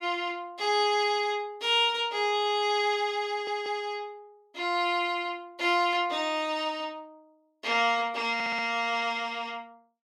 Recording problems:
audio stuttering; at 3.5 s and at 8.5 s

